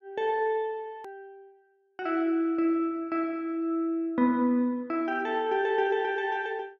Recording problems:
click at an edit; at 1 s

